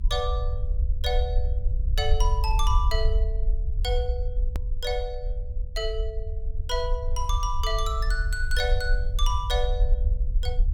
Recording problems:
low-frequency rumble; below 58 Hz, SNR -3 dB
click at an edit; at 4.5 s

